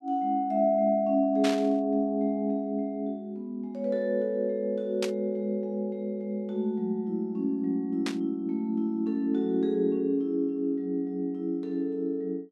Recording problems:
static burst; at 1.5 s, at 5 s and at 8 s; peak -1 dB vs average level

